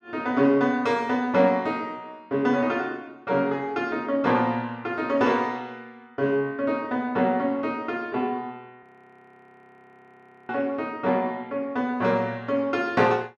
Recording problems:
frozen audio; at 9 s for 1.5 s

